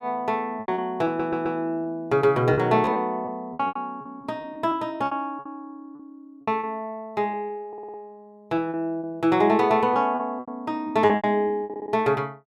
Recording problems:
packet loss; 12% of the sound replaced, filled with repeated pitch periods
stutter; at 1 s, at 7.5 s and at 12 s

